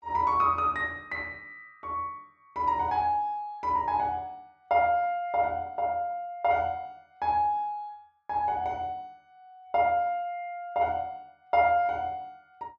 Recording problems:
none

